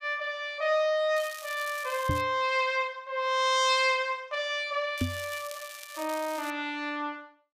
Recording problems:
crackle; from 1 to 2 s and from 5 to 6.5 s; loose cable, SNR 15 dB
microphone thump; at 2 s and at 5 s; peak +3 dB vs average level

